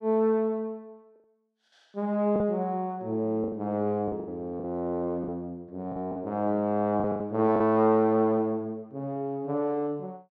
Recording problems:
packet loss; 6% of the sound replaced, filled with the last packet

